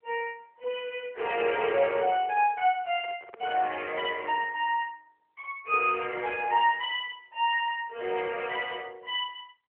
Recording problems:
telephone audio; 320 Hz to 3.3 kHz, AMR-NB
handling noise; from 3 to 4.5 s; peak -13 dB vs average level

